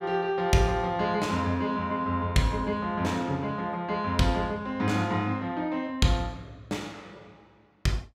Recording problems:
none

